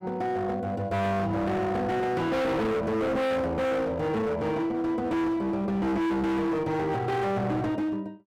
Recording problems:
distorted audio; hard clipping, uneven, signal-to-distortion ratio 6 dB

